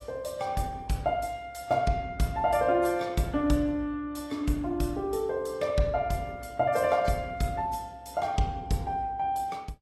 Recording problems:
lossy codec; AAC, log-spectral distance 2 dB

